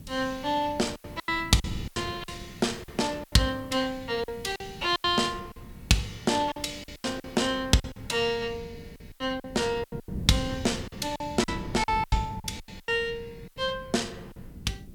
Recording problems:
hiss; slope +1 dB per octave, SNR 29 dB
wind noise; below 200 Hz, SNR 14 dB
lost packets; 12% of the sound replaced, filled with silence

